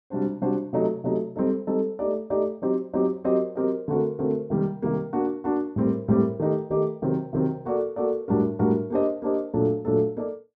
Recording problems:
none

